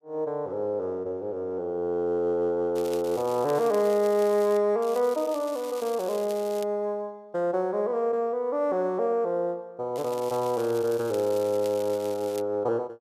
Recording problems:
crackling; from 3 to 4.5 s, from 5 to 6.5 s and from 10 to 12 s; loose cable, SNR 18 dB

